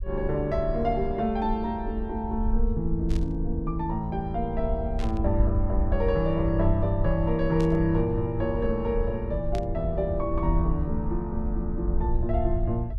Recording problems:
rumble; below 62 Hz, SNR 4 dB
burst of static; 4 times, first at 3 s; peak -10 dB vs average level

